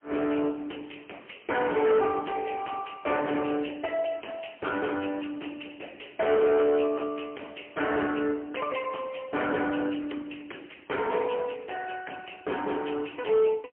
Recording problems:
phone line; 260 Hz to 3.2 kHz, AMR-NB, then MP3
distorted audio; hard clipping, signal-to-distortion ratio 12 dB

